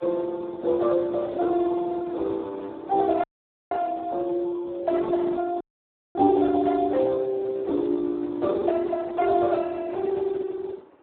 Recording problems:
phone line; 260 Hz to 2 kHz, Speex
wind noise; below 840 Hz, SNR 22 dB
dropout; at 3 s and at 5.5 s for 0.5 s

